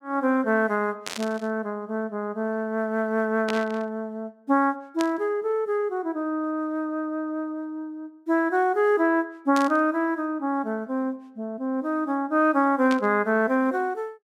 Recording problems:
burst of static; 5 times, first at 1 s; peak -2 dB vs average level

